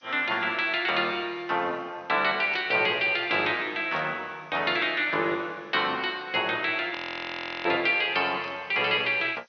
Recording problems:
treble cut off; nothing above 6.3 kHz
background hiss; slope +4 dB per octave, SNR 41 dB
static burst; at 2.5 s, at 4 s and at 8.5 s; peak -13 dB vs average level
frozen audio; at 7 s for 0.5 s

